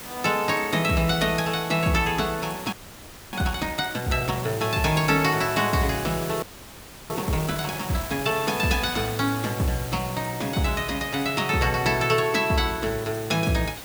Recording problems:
background hiss; slope -2 dB per octave, SNR 12 dB
frozen audio; at 2.5 s for 0.5 s and at 6.5 s for 0.5 s

